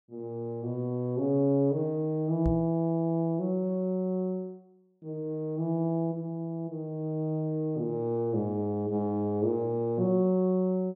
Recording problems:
knock on the microphone; at 2.5 s; peak +2 dB vs average level

